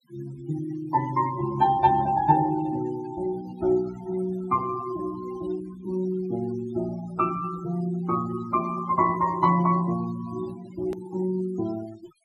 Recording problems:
noise reduction artefacts; signal-to-artefact ratio 17 dB
click at an edit; at 11 s

